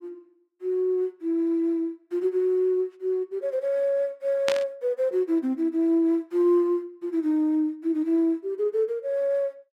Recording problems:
burst of static; at 4.5 s; peak +1 dB vs average level

